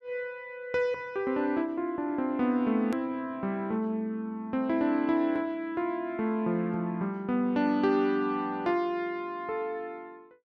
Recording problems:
click at an edit; at 3 s

